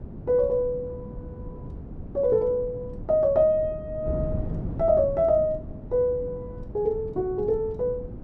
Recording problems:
wind noise; below 220 Hz, SNR 12 dB

